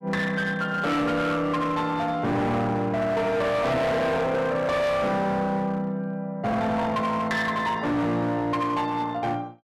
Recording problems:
distortion; hard clipping, signal-to-distortion ratio 8 dB

